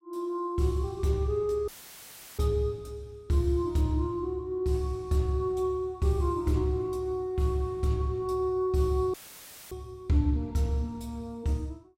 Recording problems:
dropout; at 1.5 s for 0.5 s and at 9 s for 0.5 s; filled with static

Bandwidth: 16 kHz